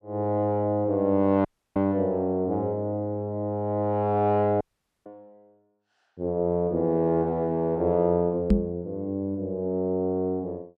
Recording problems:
dropout; at 1.5 s and at 4.5 s
microphone bump; at 8.5 s; peak +8 dB vs average level

